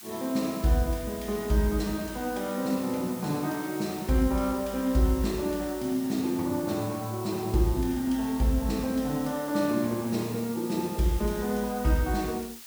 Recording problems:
background hiss; slope +3 dB per octave, SNR 14 dB

